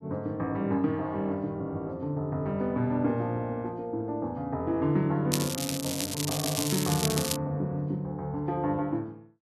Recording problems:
crackling; from 5.5 to 7.5 s; loose cable, SNR 2 dB

